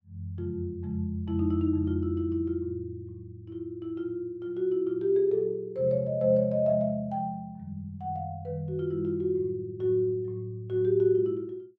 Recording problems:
none

